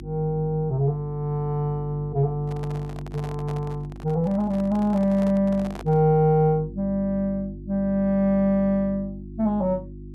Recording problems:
electrical hum; 50 Hz, harmonics up to 350 Hz, SNR 15 dB
microphone handling noise; from 2.5 to 6 s; peak -10 dB vs average level

